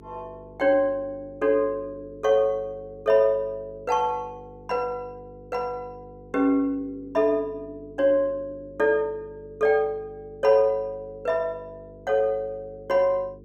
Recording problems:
mains hum; 50 Hz, harmonics up to 450 Hz, SNR 23 dB

